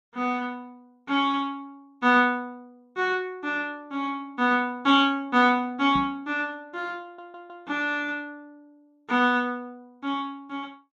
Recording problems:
microphone thump; at 6 s; peak -4 dB vs average level
stutter; at 7 s

